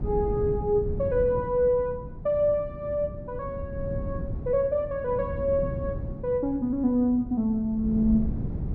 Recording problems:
wind noise; below 180 Hz, SNR 9 dB

